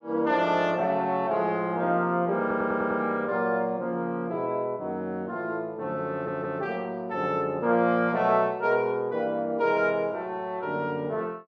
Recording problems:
audio stuttering; at 2.5 s and at 6 s

